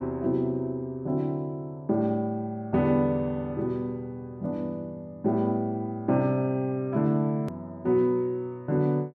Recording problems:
click at an edit; at 7.5 s

